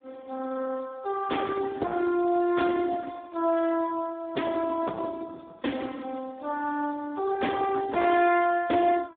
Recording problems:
phone line; 220 Hz to 3.7 kHz, Speex
distortion; hard clipping, signal-to-distortion ratio 11 dB

